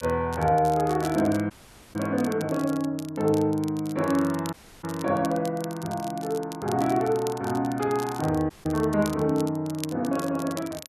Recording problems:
crackle; vinyl, SNR 18 dB
dropout; at 1.5 s, at 4.5 s and at 8.5 s

